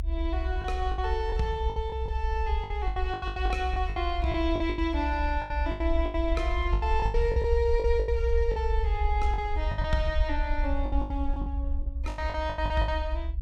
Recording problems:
rumble; below 64 Hz, SNR 1 dB
lost packets; 16% of the sound replaced, filled with the last packet

